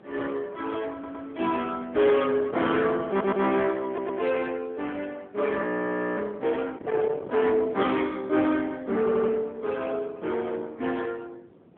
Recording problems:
telephone audio; 220 Hz to 3.4 kHz, AMR-NB
distorted audio; soft clipping, signal-to-distortion ratio 13 dB
wind noise; below 700 Hz, SNR 18 dB
audio stuttering; 4 times, first at 1 s
audio freezing; at 5.5 s for 0.5 s

